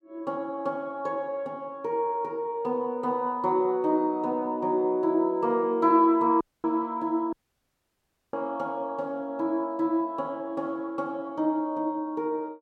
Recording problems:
audio cutting out; at 6.5 s and at 7.5 s for 1 s

